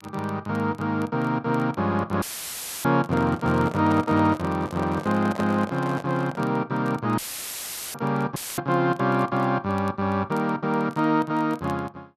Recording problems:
crackling; vinyl, SNR 29 dB
dropout; at 2 s for 0.5 s, at 7 s for 1 s and at 8.5 s; filled with static
microphone handling noise; from 3 to 6.5 s; peak -3 dB vs average level

